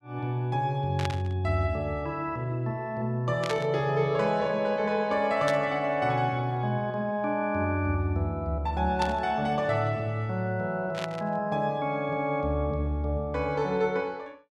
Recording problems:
burst of static; 5 times, first at 1 s; peak -1 dB vs average level

